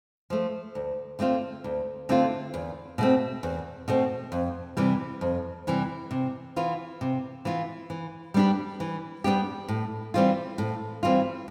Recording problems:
none

